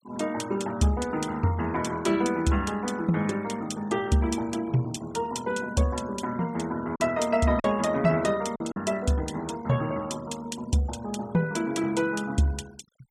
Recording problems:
noise reduction artefacts; signal-to-artefact ratio 19 dB
packet loss; 1.3% of the sound replaced, filled with silence

